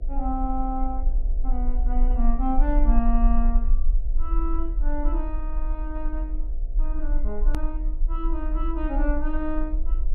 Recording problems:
hum; 60 Hz, harmonics up to 720 Hz, SNR 20 dB
low-frequency rumble; below 38 Hz, strongest tone 22 Hz, SNR -4 dB
edit click; at 7.5 s

